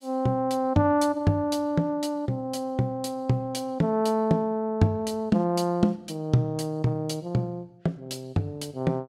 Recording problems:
none

